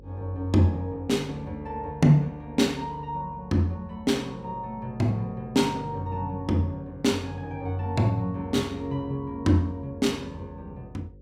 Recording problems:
electrical hum; 50 Hz, harmonics up to 550 Hz, SNR 23 dB

